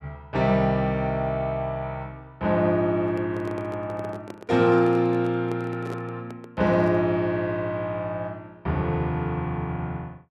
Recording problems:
handling noise; from 3 to 7 s; peak -7 dB vs average level

